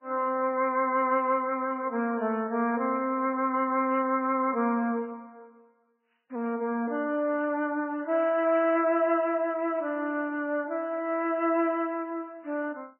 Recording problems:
lossy compression; MP3, log-spectral distance 2 dB, nothing above 3 kHz

